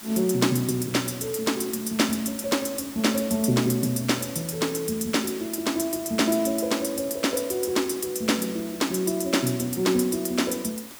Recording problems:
hiss; slope -1 dB per octave, SNR 15 dB

